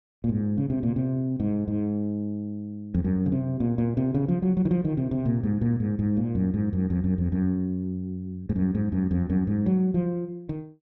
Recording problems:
none

